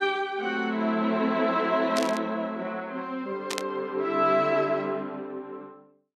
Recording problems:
static burst; at 2 s and at 3.5 s; peak +1 dB vs average level

